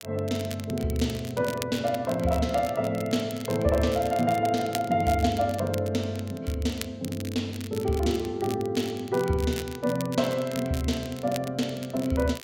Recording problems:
crackle; vinyl, SNR 15 dB

